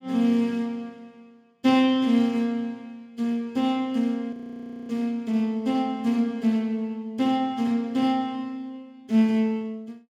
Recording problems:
audio freezing; at 4.5 s for 0.5 s

